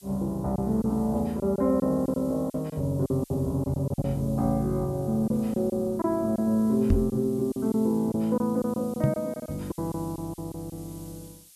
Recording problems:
hiss; slope +5 dB per octave, SNR 23 dB
packet loss; 8% of the sound replaced, filled with silence
knock on the microphone; at 7 s and at 9 s; peak +9 dB vs average level

